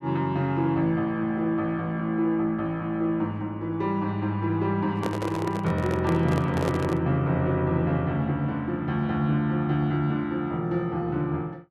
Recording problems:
microphone handling noise; from 5 to 7 s; peak 0 dB vs average level

